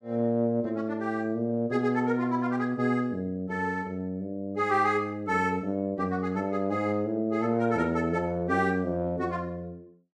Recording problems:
none

